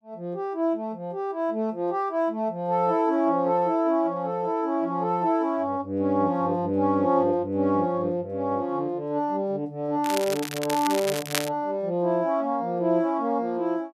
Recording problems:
crackling; from 10 to 11 s; loose cable, SNR 7 dB

